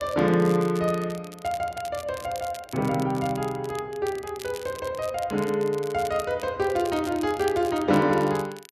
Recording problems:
crackling; vinyl, SNR 18 dB

